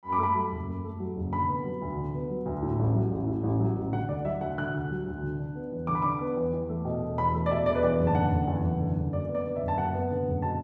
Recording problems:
none

